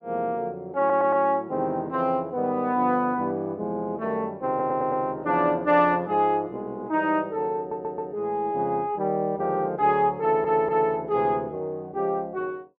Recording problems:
audio stuttering; 4 times, first at 1 s

